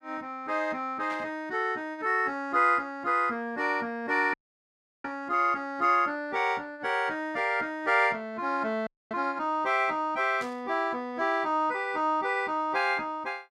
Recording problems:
burst of static; at 1 s and at 10 s; peak -12 dB vs average level
audio cutting out; at 4.5 s for 0.5 s and at 9 s

